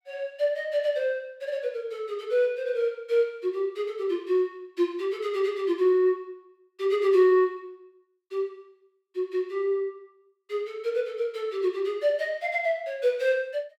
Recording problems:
none

